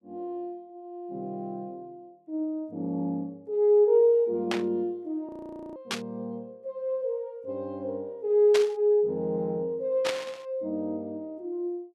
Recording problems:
burst of static; 4 times, first at 4.5 s; peak +1 dB vs average level
audio freezing; at 5.5 s

